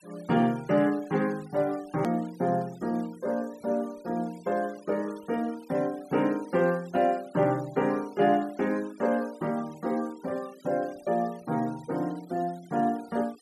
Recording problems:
denoising artefacts; signal-to-artefact ratio 24 dB
click at an edit; at 2 s

